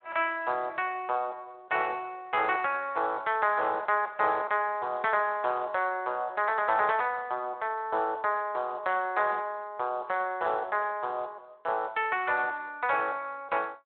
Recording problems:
telephone audio; 340 Hz to 3.9 kHz, Speex

